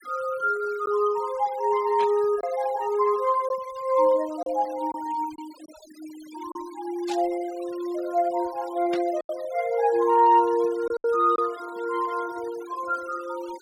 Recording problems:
denoising artefacts; signal-to-artefact ratio 22 dB
lost packets; 3% of the sound replaced, filled with silence
static burst; at 2 s, at 7 s and at 9 s; peak -7 dB vs average level

